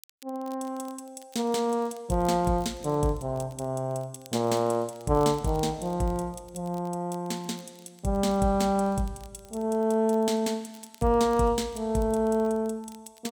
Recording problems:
crackle; vinyl, SNR 27 dB

